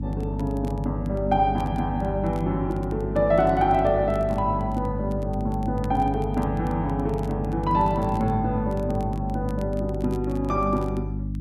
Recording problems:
electrical hum; 50 Hz, harmonics up to 300 Hz, SNR 5 dB
crackle; vinyl, SNR 29 dB

